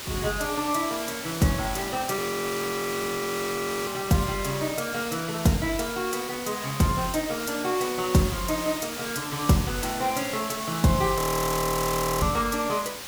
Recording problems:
background hiss; slope -1 dB per octave, SNR 7 dB
frozen audio; at 2 s for 1.5 s and at 11 s for 1 s

